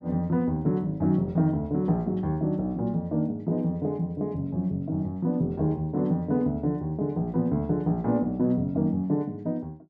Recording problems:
none

